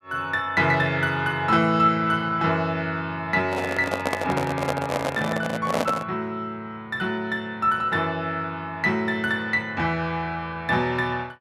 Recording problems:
microphone handling noise; from 3.5 to 6 s; peak +3 dB vs average level

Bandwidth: 13.5 kHz